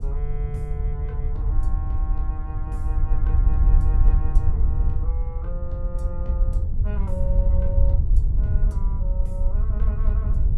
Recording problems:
wind on the microphone; below 66 Hz, SNR -14 dB

